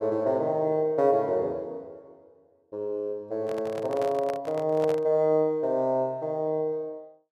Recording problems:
handling noise; from 3.5 to 5 s; peak -6 dB vs average level

